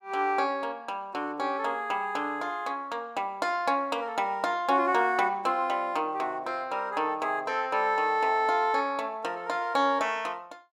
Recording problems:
none

